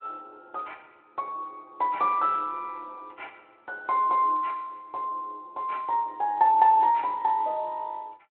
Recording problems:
phone line; 280 Hz to 3.4 kHz, Speex

